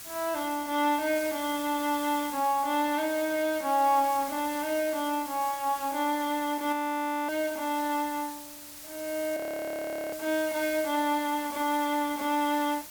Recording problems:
hiss; slope +1 dB per octave, SNR 12 dB
frozen audio; at 6.5 s for 0.5 s and at 9.5 s for 1 s

